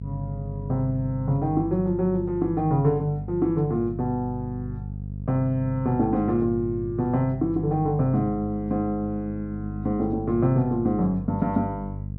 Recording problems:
hum; 50 Hz, harmonics up to 450 Hz, SNR 9 dB

